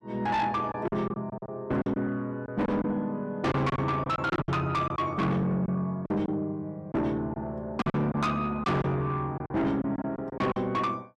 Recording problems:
distorted audio; soft clipping, signal-to-distortion ratio 7 dB
lost packets; 9% of the sound replaced, filled with silence

